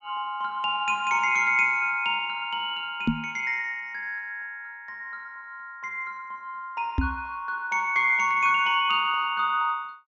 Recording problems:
treble cut off; nothing above 8 kHz
microphone bump; at 3 s and at 7 s; peak +5 dB vs average level

